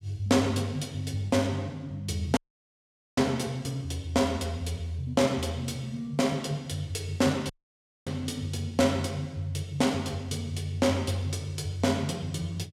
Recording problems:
dropout; at 2.5 s for 1 s and at 7.5 s for 0.5 s

